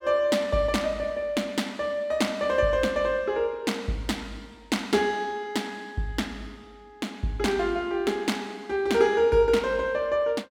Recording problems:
none

